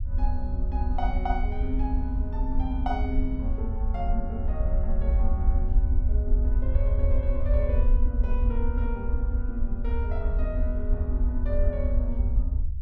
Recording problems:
low-frequency rumble; below 64 Hz, SNR -7 dB

